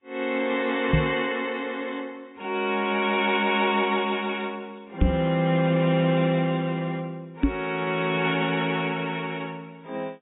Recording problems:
lossy compression; AAC, log-spectral distance 3 dB, nothing above 3.7 kHz
microphone bump; at 1 s, at 5 s and at 7.5 s; peak +7 dB vs average level

